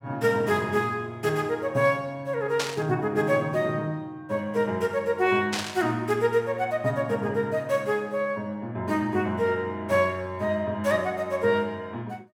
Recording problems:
burst of static; at 2.5 s and at 5.5 s; peak +2 dB vs average level

